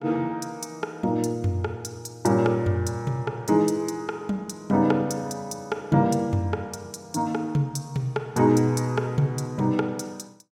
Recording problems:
none

